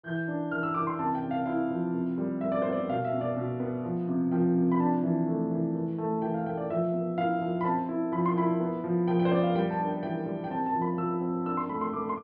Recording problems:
low-pass filter; nothing above 5.5 kHz

